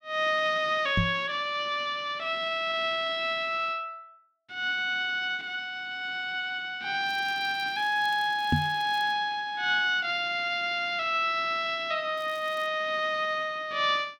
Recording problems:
knock on the microphone; at 1 s and at 8.5 s; peak +5 dB vs average level
crackling; from 7 to 9 s and at 12 s; loose cable, SNR 26 dB

